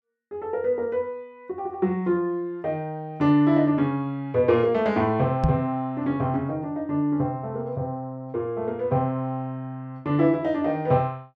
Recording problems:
knock on the microphone; at 5.5 s; peak +5 dB vs average level

